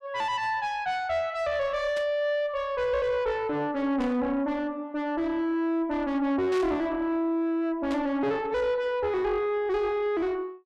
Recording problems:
distorted audio; soft clipping, signal-to-distortion ratio 8 dB
burst of static; 4 times, first at 2 s; peak -8 dB vs average level

